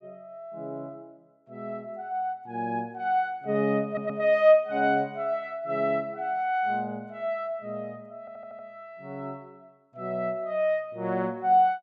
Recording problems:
audio stuttering; at 4 s and at 8 s

